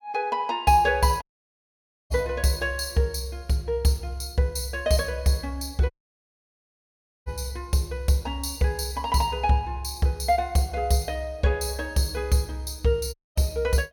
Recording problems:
audio cutting out; at 1 s for 1 s, at 6 s for 1.5 s and at 13 s

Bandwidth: 18 kHz